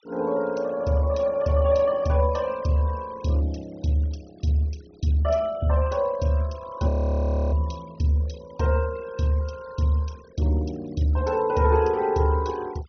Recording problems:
treble missing; nothing above 6.1 kHz
noise reduction artefacts; signal-to-artefact ratio 24 dB
frozen audio; at 7 s for 0.5 s

